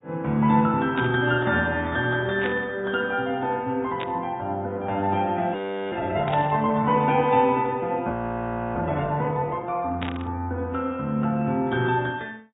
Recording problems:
low-pass filter; nothing above 3.2 kHz
lossy compression; AAC, log-spectral distance 2 dB
static burst; 5 times, first at 1 s; peak -4 dB vs average level
audio freezing; at 5.5 s and at 8 s for 0.5 s

